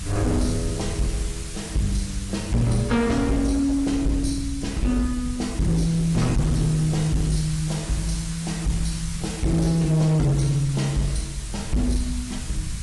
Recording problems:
lossy compression; AAC, log-spectral distance 8 dB, nothing above 10.4 kHz
distortion; hard clipping, signal-to-distortion ratio 11 dB
hiss; slope +1 dB per octave, SNR 13 dB
rumble; below 98 Hz, SNR 13 dB

